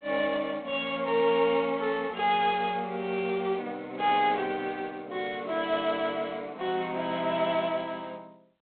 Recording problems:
phone line; 240 Hz to 3.7 kHz, G.726

